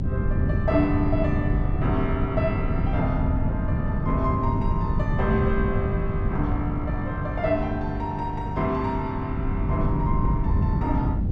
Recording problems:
electrical hum; 50 Hz, harmonics up to 800 Hz, SNR 8 dB
wind on the microphone; below 160 Hz, SNR -1 dB

